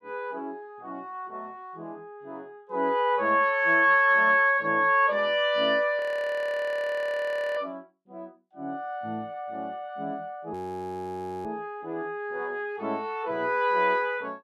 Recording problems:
audio freezing; at 6 s for 1.5 s and at 11 s for 1 s

